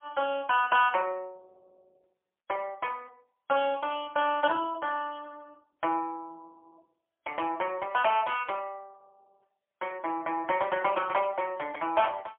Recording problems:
phone line; 240 Hz to 3.3 kHz, AMR-NB, then MP3

